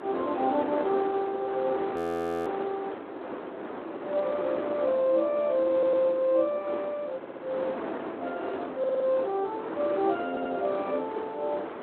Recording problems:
telephone audio; 260 Hz to 3.5 kHz, Speex
wind noise; below 950 Hz, SNR 7 dB
audio freezing; at 2 s for 0.5 s
stutter; 4 times, first at 5.5 s

